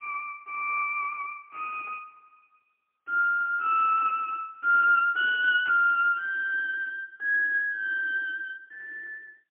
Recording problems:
phone line; 840 Hz to 2.9 kHz, AMR-NB, then MP3

